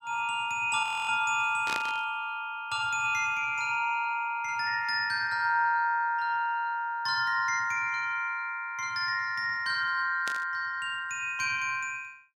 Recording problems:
audio freezing; at 1 s
static burst; at 1.5 s and at 10 s; peak -2 dB vs average level

